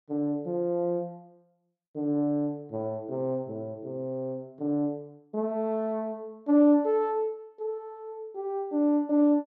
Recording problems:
none

